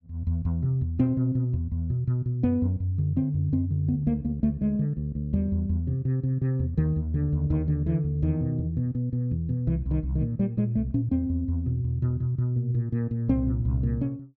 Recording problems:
none

